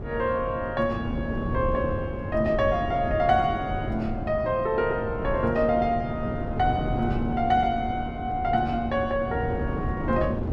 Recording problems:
wind on the microphone; below 310 Hz, SNR 6 dB

